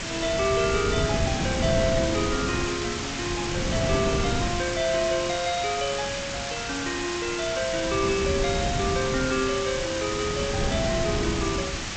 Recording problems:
lossy compression; G.722, log-spectral distance 13 dB
background hiss; slope 0 dB per octave, SNR 4 dB
wind on the microphone; below 290 Hz, SNR 4 dB

